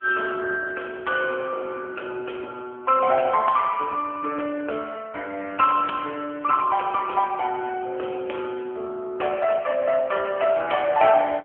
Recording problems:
phone line; 320 Hz to 3.3 kHz, AMR-NB

